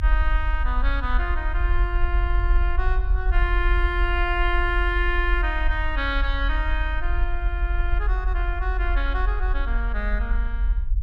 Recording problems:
low-frequency rumble; below 46 Hz, strongest tone 44 Hz, SNR -2 dB

